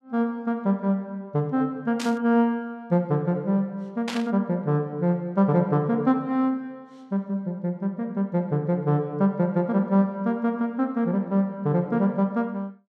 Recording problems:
burst of static; at 2 s and at 4 s; peak -3 dB vs average level

